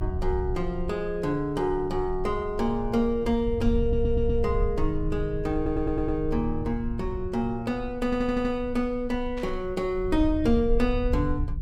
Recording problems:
low-frequency rumble; below 70 Hz, strongest tone 22 Hz, SNR 7 dB
stutter; at 4 s, at 5.5 s and at 8 s
static burst; at 9.5 s; peak -13 dB vs average level

